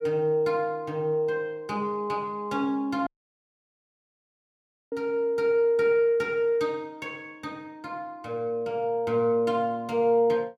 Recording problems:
audio cutting out; at 3 s for 2 s

